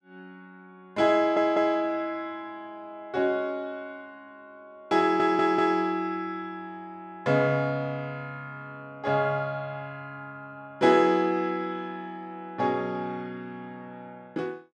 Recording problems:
audio stuttering; at 1 s and at 5 s

